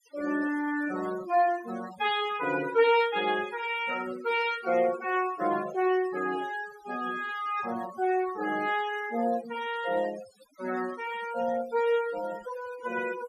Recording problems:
noise reduction artefacts; signal-to-artefact ratio 15 dB

